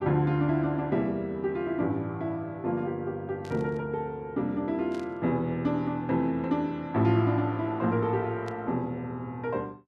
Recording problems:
static burst; at 3.5 s, at 5 s and at 8.5 s; peak -15 dB vs average level

